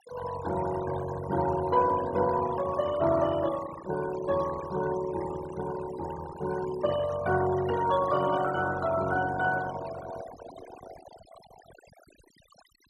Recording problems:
noise reduction artefacts; signal-to-artefact ratio 13 dB

